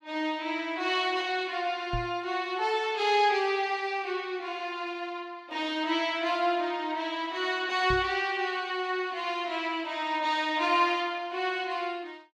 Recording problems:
microphone thump; at 2 s and at 8 s; peak -2 dB vs average level

